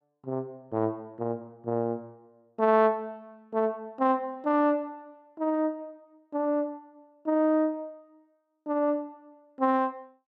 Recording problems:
none

